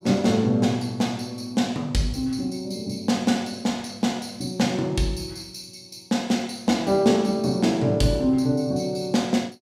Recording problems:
none

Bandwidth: 16 kHz